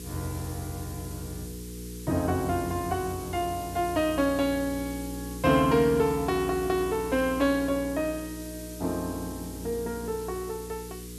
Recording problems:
mains hum; 60 Hz, harmonics up to 480 Hz, SNR 12 dB
background hiss; SNR 15 dB

